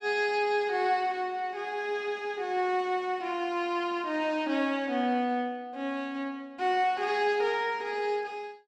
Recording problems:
none

